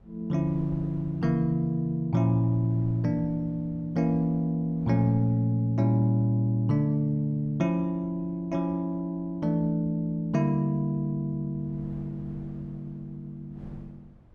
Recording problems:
wind on the microphone; below 200 Hz, SNR 24 dB

